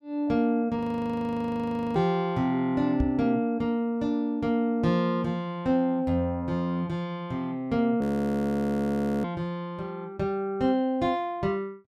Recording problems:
frozen audio; at 1 s for 1 s and at 8 s for 1 s
microphone bump; at 3 s; peak +2 dB vs average level

